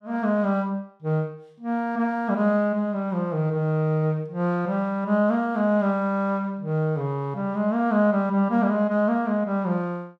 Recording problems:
none

